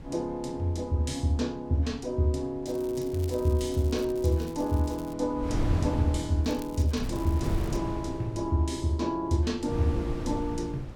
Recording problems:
wind noise; below 210 Hz, SNR 7 dB
crackle; from 2.5 to 5 s and from 6.5 to 8 s; loose cable, SNR 22 dB

